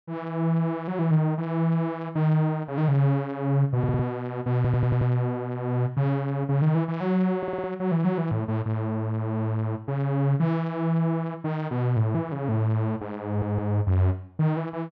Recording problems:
audio stuttering; 4 times, first at 4 s

